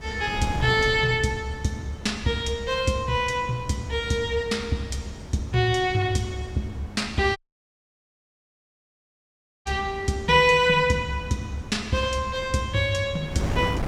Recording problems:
wind on the microphone; below 360 Hz, SNR 14 dB
dropout; at 7.5 s for 2.5 s

